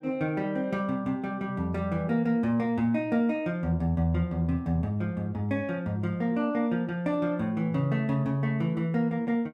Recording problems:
none

